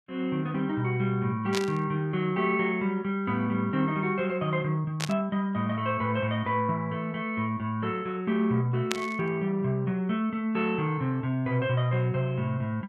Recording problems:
static burst; at 1.5 s, at 5 s and at 9 s; peak +3 dB vs average level

